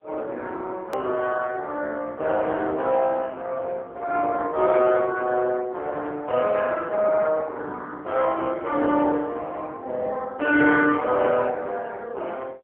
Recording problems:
telephone audio; 260 Hz to 3.4 kHz, AMR-NB
edit click; at 1 s

